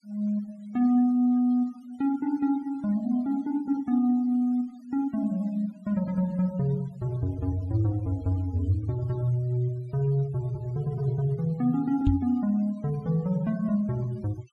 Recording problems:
noise reduction artefacts; signal-to-artefact ratio 27 dB
knock on the microphone; at 12 s; peak +5 dB vs average level

